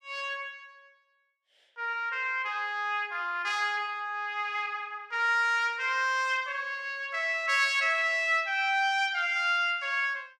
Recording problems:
none

